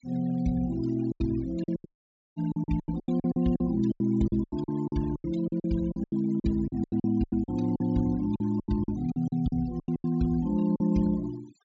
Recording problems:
treble cut off; nothing above 8 kHz
denoising artefacts; signal-to-artefact ratio 21 dB
packet loss; 18% of the sound replaced, filled with silence
audio cutting out; at 2 s

